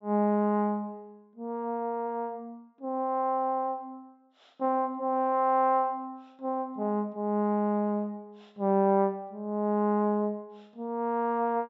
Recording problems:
treble cut off; nothing above 8 kHz

